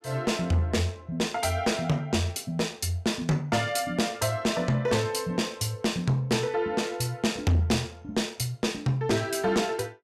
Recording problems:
distorted audio; soft clipping, signal-to-distortion ratio 11 dB

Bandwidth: 14.5 kHz